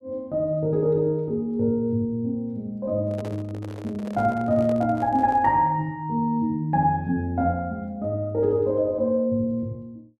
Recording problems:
handling noise; from 3 to 5.5 s; peak -10 dB vs average level

